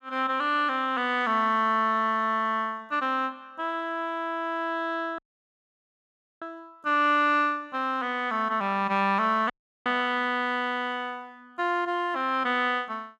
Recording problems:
audio cutting out; at 5 s for 1 s and at 9.5 s

